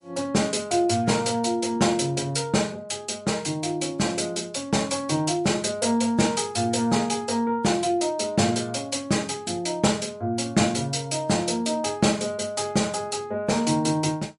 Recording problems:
codec artefacts; MP3, log-spectral distance 4 dB, nothing above 10.7 kHz

